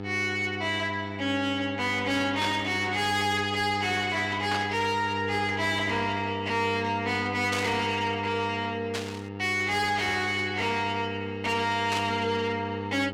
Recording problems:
distortion; soft clipping, signal-to-distortion ratio 7 dB
electrical hum; 50 Hz, harmonics up to 1.8 kHz, SNR 9 dB
burst of static; 5 times, first at 2.5 s; peak -1 dB vs average level

